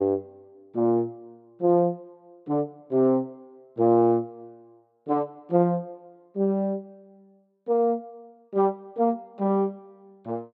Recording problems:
none

